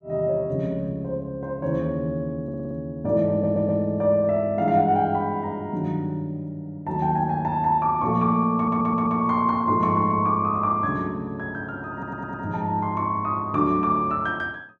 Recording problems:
audio stuttering; 4 times, first at 2.5 s

